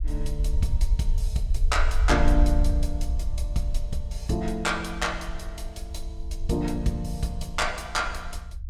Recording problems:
low-frequency rumble; below 60 Hz, SNR 1 dB

